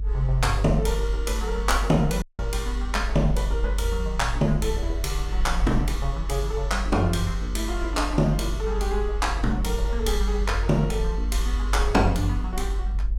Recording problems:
rumble; below 50 Hz, strongest tone 48 Hz, SNR 2 dB
dropout; at 2 s

